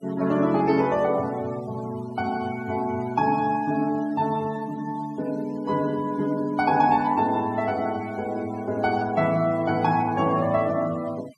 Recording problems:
denoising artefacts; signal-to-artefact ratio 22 dB

